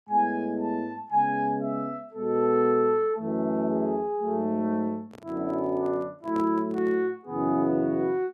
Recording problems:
microphone handling noise; from 5 to 7 s; peak -10 dB vs average level

